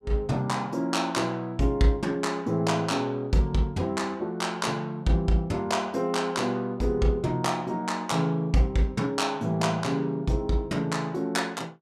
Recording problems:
none

